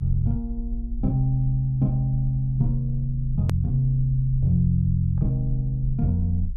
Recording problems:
low-frequency rumble; below 52 Hz, SNR 10 dB
click at an edit; at 3.5 s

